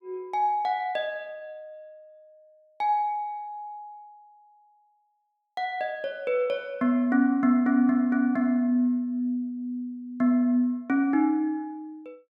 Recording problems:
none

